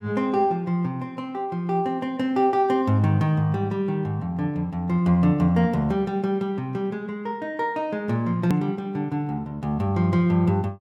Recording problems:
hard cut with a click; at 8.5 s

